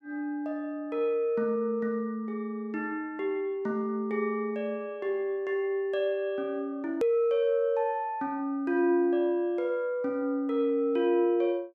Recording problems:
click at an edit; at 7 s

